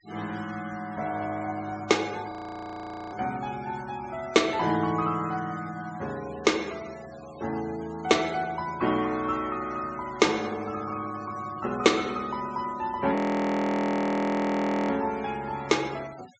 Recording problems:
treble missing; nothing above 8 kHz
denoising artefacts; signal-to-artefact ratio 19 dB
audio freezing; at 2.5 s for 1 s and at 13 s for 2 s

